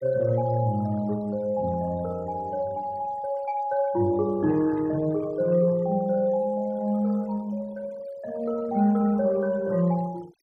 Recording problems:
noise reduction artefacts; signal-to-artefact ratio 24 dB

